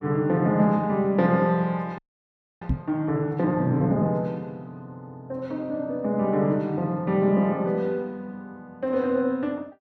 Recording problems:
audio freezing; at 2 s for 0.5 s
microphone thump; at 2.5 s; peak +3 dB vs average level

